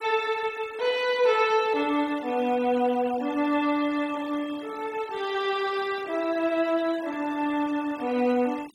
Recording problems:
denoising artefacts; signal-to-artefact ratio 19 dB

